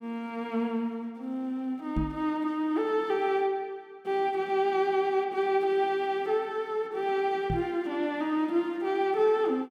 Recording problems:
microphone thump; at 2 s and at 7.5 s; peak +2 dB vs average level

